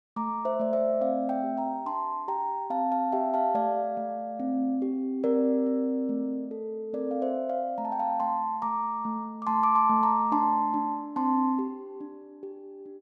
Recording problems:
none

